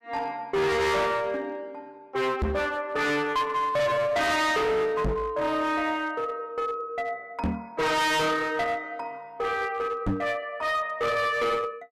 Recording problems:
distortion; hard clipping, uneven, signal-to-distortion ratio 6 dB
knock on the microphone; 4 times, first at 2.5 s; peak +3 dB vs average level

